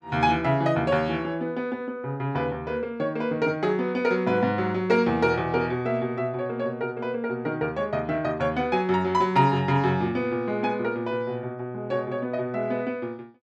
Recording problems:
none

